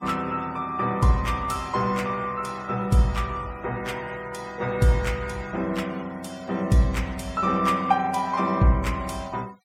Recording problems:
noise reduction artefacts; signal-to-artefact ratio 23 dB

